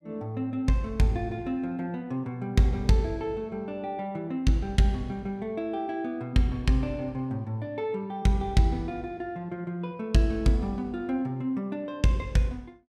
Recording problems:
none

